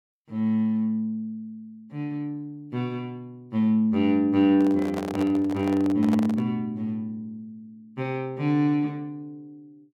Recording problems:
microphone handling noise; from 4.5 to 6.5 s; peak -4 dB vs average level

